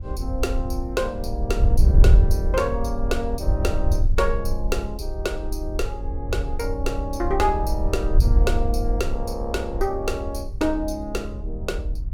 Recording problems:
wind noise; below 66 Hz, SNR -2 dB

